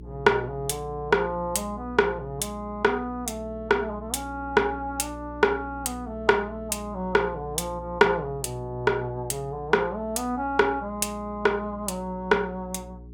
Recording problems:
hum; 60 Hz, harmonics up to 420 Hz, SNR 16 dB

